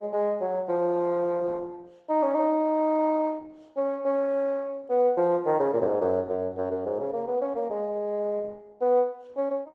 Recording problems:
lossy codec; Opus, log-spectral distance 2 dB

